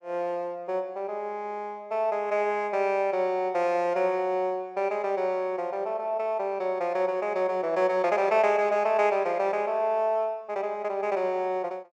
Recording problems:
none

